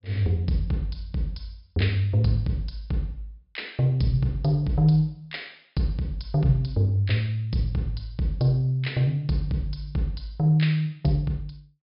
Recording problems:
low-pass filter; nothing above 5.5 kHz

